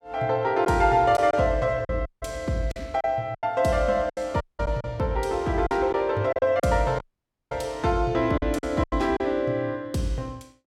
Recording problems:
lost packets; 7% of the sound replaced, filled with silence
audio cutting out; at 2 s, at 4.5 s and at 7 s for 0.5 s

